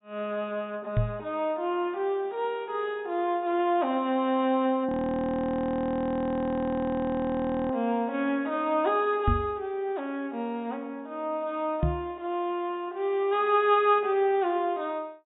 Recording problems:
low-pass filter; nothing above 4 kHz
microphone bump; at 1 s, at 9.5 s and at 12 s; peak +5 dB vs average level
frozen audio; at 5 s for 3 s

